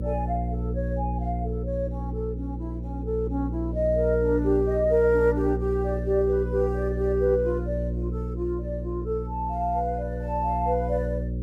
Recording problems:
electrical hum; 60 Hz, harmonics up to 540 Hz, SNR 4 dB

